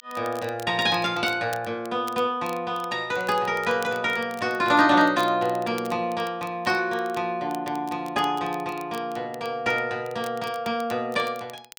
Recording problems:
crackling; vinyl, SNR 22 dB

